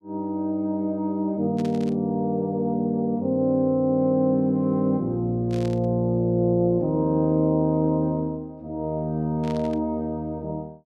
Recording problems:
burst of static; at 1.5 s, at 5.5 s and at 9.5 s; peak -14 dB vs average level

